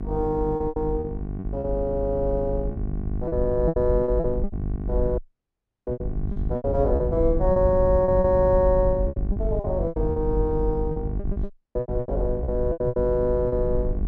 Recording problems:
hum; 50 Hz, harmonics up to 1.1 kHz, SNR 9 dB
low-frequency rumble; below 74 Hz, SNR 6 dB
lost packets; 14% of the sound replaced, filled with repeated pitch periods
audio cutting out; at 5 s for 0.5 s and at 12 s

